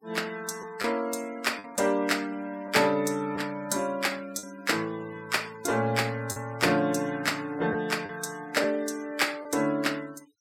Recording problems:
denoising artefacts; signal-to-artefact ratio 21 dB
lost packets; 3% of the sound replaced, filled with the last packet

